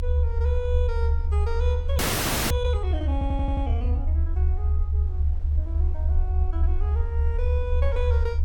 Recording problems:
low-frequency rumble; below 76 Hz, strongest tone 74 Hz, SNR -9 dB
wind on the microphone; below 560 Hz, SNR 20 dB
frozen audio; at 2 s for 0.5 s
audio stuttering; at 3 s

